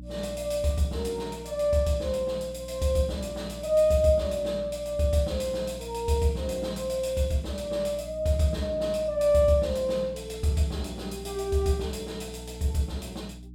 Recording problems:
hum; 60 Hz, harmonics up to 300 Hz, SNR 16 dB

